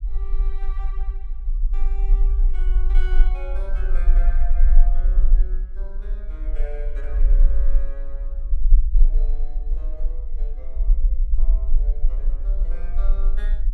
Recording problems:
low-frequency rumble; below 36 Hz, strongest tone 20 Hz, SNR -19 dB

